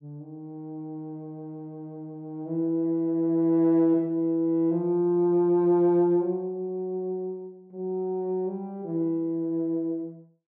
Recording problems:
none

